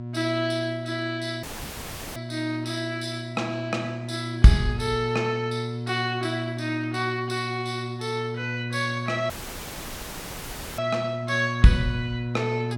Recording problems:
hum; 60 Hz, harmonics up to 960 Hz, SNR 7 dB
dropout; at 1.5 s for 0.5 s and at 9.5 s for 1.5 s

